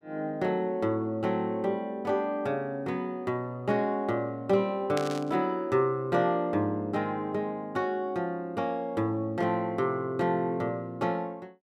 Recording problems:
burst of static; at 5 s; peak -2 dB vs average level

